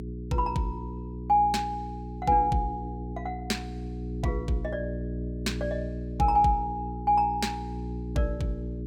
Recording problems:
electrical hum; 60 Hz, harmonics up to 420 Hz, SNR 8 dB

